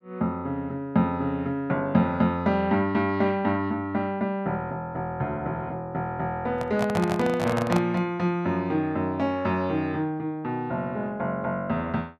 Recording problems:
handling noise; from 6.5 to 8 s; peak +2 dB vs average level

